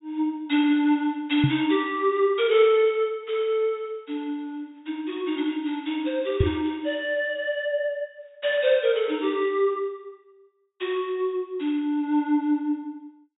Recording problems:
treble cut off; nothing above 4 kHz
microphone thump; at 1.5 s and at 6.5 s; peak +6 dB vs average level

